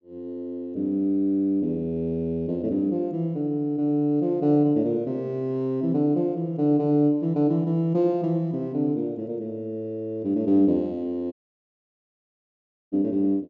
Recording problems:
treble cut off; nothing above 7.2 kHz
audio cutting out; at 11 s for 1.5 s

